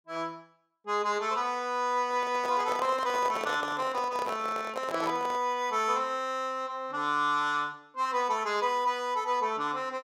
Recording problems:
microphone handling noise; from 2 to 5.5 s; peak -3 dB vs average level

